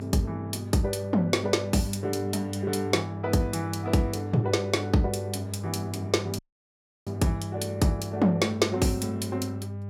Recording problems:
mains hum; 50 Hz, harmonics up to 800 Hz, SNR 8 dB
dropout; at 6.5 s for 0.5 s

